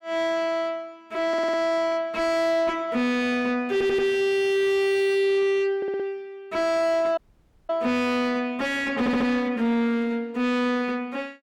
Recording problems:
distorted audio; soft clipping, signal-to-distortion ratio 7 dB
stutter; 4 times, first at 1.5 s
dropout; at 7 s for 0.5 s

